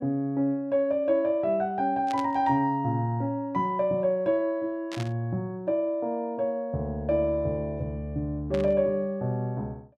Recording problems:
burst of static; at 2 s, at 5 s and at 8.5 s; peak -8 dB vs average level

